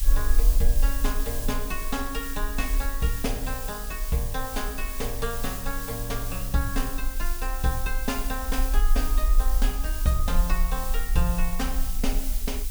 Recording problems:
background hiss; slope +4 dB per octave, SNR 4 dB
low-frequency rumble; below 42 Hz, SNR -1 dB

